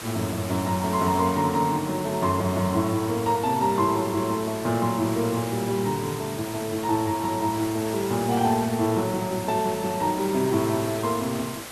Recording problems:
hiss; slope -2 dB per octave, SNR 11 dB

